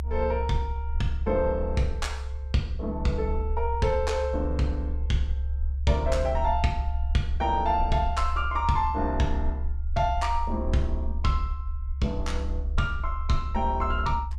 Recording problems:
low-frequency rumble; below 70 Hz, strongest tone 68 Hz, SNR 3 dB

